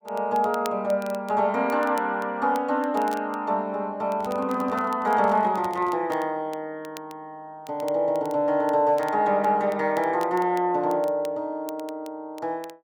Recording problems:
crackling; vinyl, SNR 24 dB
handling noise; from 4 to 6 s; peak -12 dB vs average level

